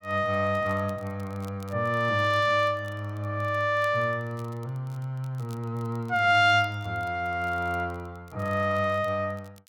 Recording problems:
crackling; vinyl, SNR 30 dB

